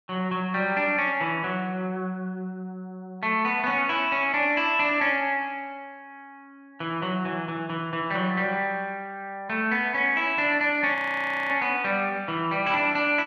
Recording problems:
audio freezing; at 11 s for 0.5 s

